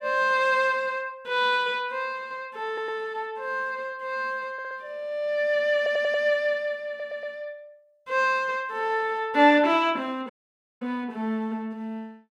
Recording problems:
stutter; 4 times, first at 2.5 s
dropout; at 10 s for 0.5 s

